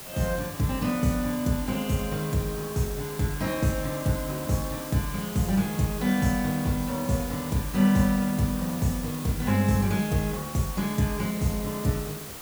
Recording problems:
background hiss; slope -3 dB per octave, SNR 11 dB

